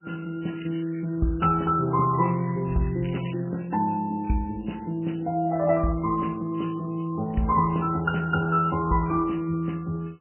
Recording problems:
lossy codec; MP2, then MP3, log-spectral distance 6 dB, nothing above 3 kHz
crackle; from 0.5 to 3.5 s; loose cable, SNR 19 dB

